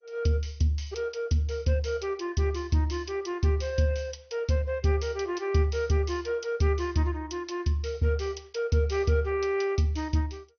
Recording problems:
codec artefacts; MP2, log-spectral distance 4 dB, nothing above 6.3 kHz

